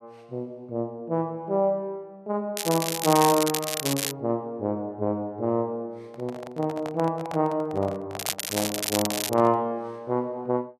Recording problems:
crackle; from 2.5 to 4 s and from 8 to 9.5 s; loose cable, SNR 2 dB
handling noise; from 6 to 9.5 s; peak -4 dB vs average level

